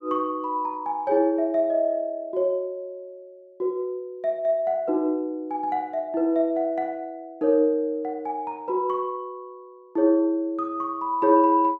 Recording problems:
none

